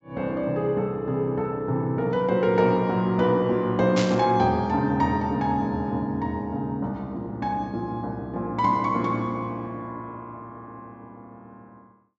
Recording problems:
treble missing; nothing above 7.7 kHz
static burst; at 4 s; peak -1 dB vs average level

